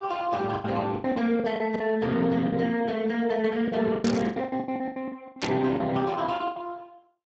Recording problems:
codec artefacts; Speex, log-spectral distance 4 dB, nothing above 7.3 kHz
lost packets; 16% of the sound replaced, filled with the last packet
burst of static; at 4 s and at 5.5 s; peak -2 dB vs average level

